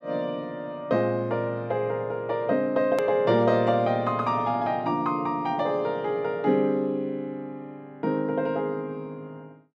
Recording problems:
hard cut with a click; at 3 s

